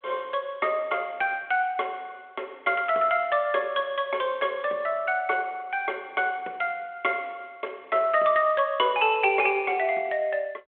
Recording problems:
telephone audio; 300 Hz to 3.3 kHz, G.726

